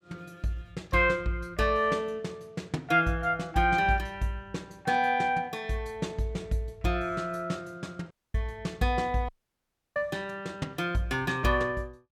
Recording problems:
audio cutting out; at 8 s and at 9.5 s for 0.5 s

